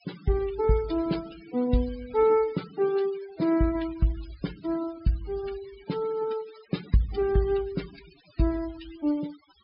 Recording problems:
low-pass filter; nothing above 5.5 kHz
noise reduction artefacts; signal-to-artefact ratio 19 dB

